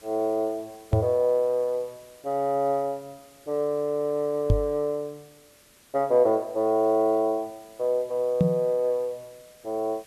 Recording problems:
background hiss; SNR 27 dB
microphone thump; at 1 s, at 4.5 s and at 8.5 s; peak +7 dB vs average level

